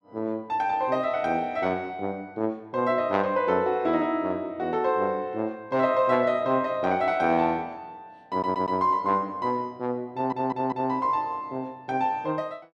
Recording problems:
audio stuttering; at 8.5 s and at 10 s

